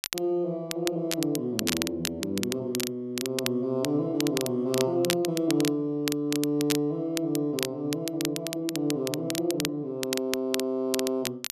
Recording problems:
crackle; vinyl, SNR 5 dB

